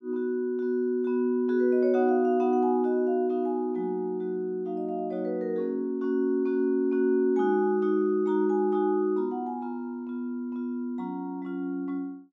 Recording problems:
none

